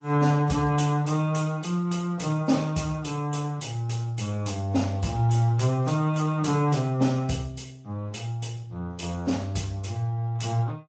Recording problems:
lossy codec; MP3, then Speex, log-spectral distance 4 dB, nothing above 7.6 kHz

